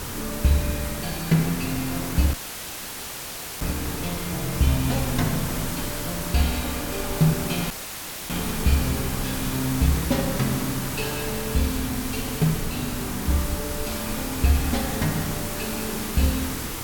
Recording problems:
hiss; SNR 4 dB
rumble; below 94 Hz, strongest tone 22 Hz, SNR 14 dB
audio cutting out; at 2.5 s for 1.5 s and at 7.5 s for 0.5 s

